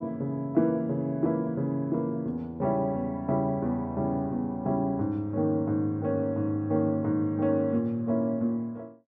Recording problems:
none

